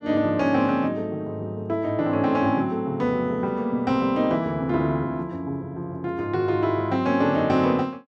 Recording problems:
none

